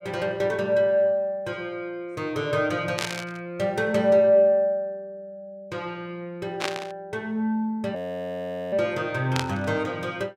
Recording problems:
static burst; at 3 s, at 6.5 s and at 9.5 s; peak +2 dB vs average level
frozen audio; at 8 s for 1 s

